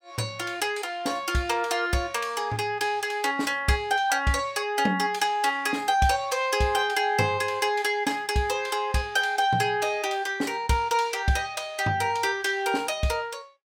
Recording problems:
none

